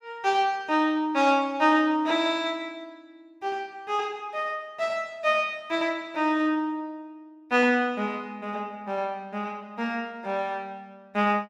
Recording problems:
none

